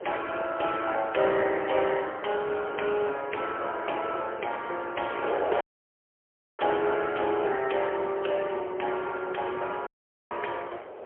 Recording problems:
phone line; 340 Hz to 3.2 kHz, AMR-NB, then MP3
wind on the microphone; below 750 Hz, SNR 10 dB
audio cutting out; at 5.5 s for 1 s and at 10 s

